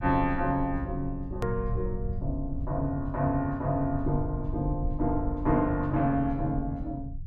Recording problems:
low-frequency rumble; below 78 Hz, SNR 8 dB
click at an edit; at 1.5 s

